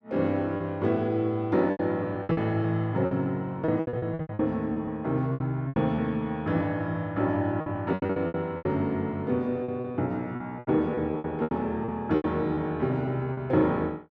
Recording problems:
lost packets; 13% of the sound replaced, filled with repeated pitch periods

